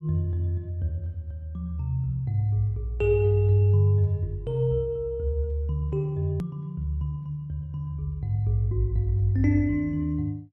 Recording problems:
hard cut with a click; at 6.5 s

